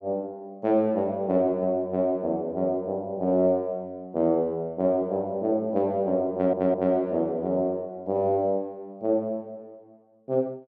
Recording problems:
stutter; at 6.5 s

